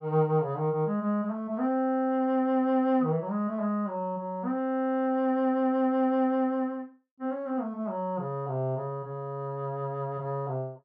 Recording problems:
none

